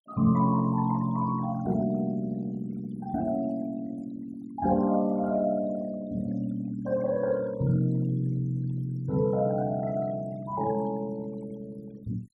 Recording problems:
denoising artefacts; signal-to-artefact ratio 21 dB

